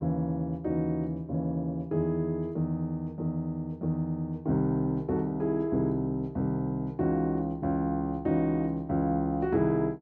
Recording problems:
none

